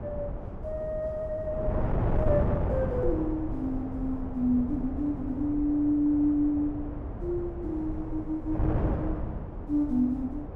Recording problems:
wind on the microphone; below 300 Hz, SNR 4 dB

